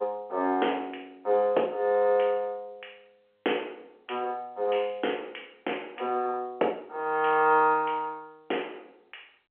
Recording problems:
telephone audio; 320 Hz to 3.3 kHz, G.711

